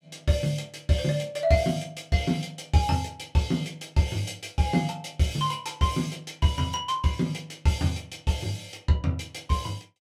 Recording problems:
none

